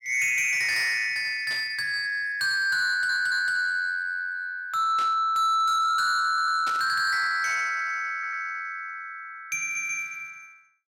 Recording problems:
distortion; soft clipping, signal-to-distortion ratio 12 dB
static burst; at 1.5 s, at 5 s and at 6.5 s; peak -8 dB vs average level
stutter; 4 times, first at 3 s

